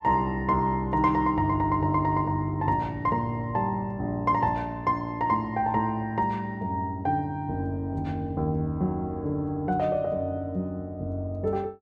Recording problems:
none

